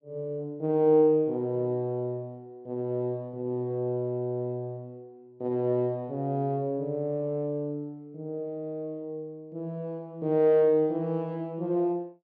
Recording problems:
low-pass filter; nothing above 8 kHz

